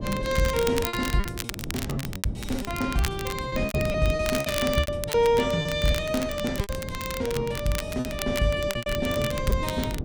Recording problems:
wind noise; below 240 Hz, SNR 8 dB
crackling; vinyl, SNR 9 dB
packet loss; 12% of the sound replaced, filled with repeated pitch periods

